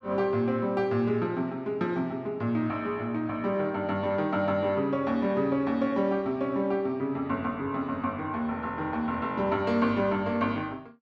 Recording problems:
none

